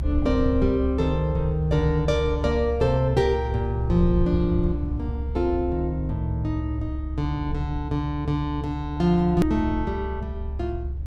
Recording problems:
low-frequency rumble; below 72 Hz, strongest tone 68 Hz, SNR 5 dB
edit click; at 9.5 s

